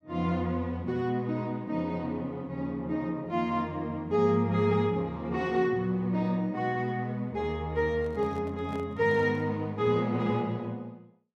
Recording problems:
handling noise; from 8 to 9.5 s; peak -12 dB vs average level

